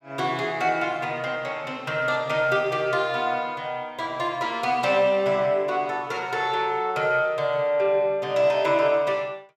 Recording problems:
none

